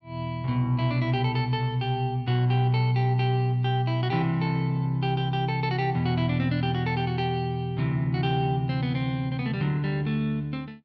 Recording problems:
none

